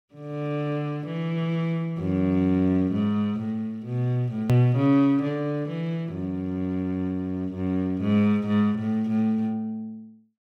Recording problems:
edit click; at 4.5 s

